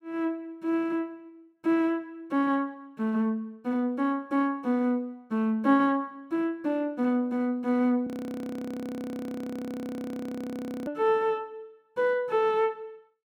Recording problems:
audio freezing; at 8 s for 3 s

